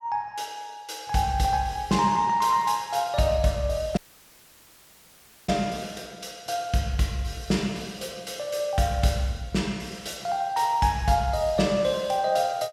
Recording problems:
dropout; at 4 s for 1.5 s

